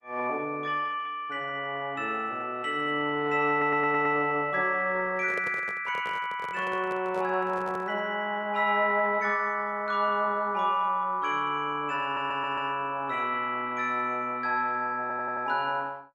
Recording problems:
codec artefacts; Opus, log-spectral distance 2 dB
stutter; at 3.5 s, at 12 s and at 15 s
handling noise; from 5 to 8 s; peak -5 dB vs average level

